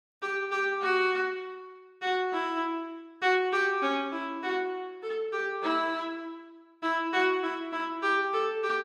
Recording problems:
none

